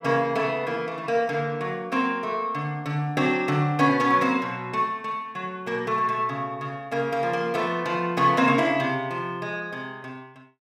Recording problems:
none

